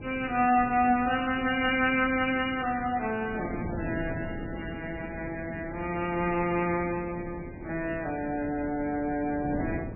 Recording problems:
codec artefacts; MP3, log-spectral distance 4 dB, nothing above 2.4 kHz
wind noise; below 350 Hz, SNR 12 dB

